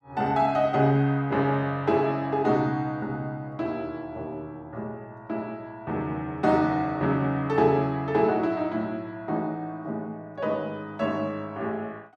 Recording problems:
none

